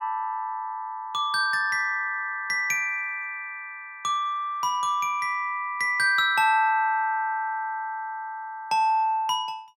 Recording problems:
none

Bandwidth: 17 kHz